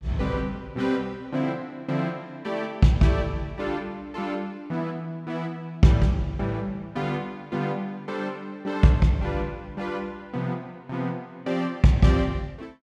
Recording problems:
none

